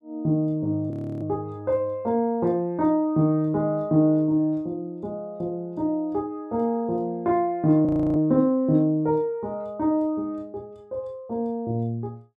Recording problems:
frozen audio; at 1 s and at 8 s

